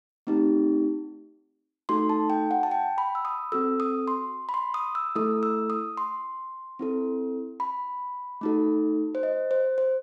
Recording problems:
none

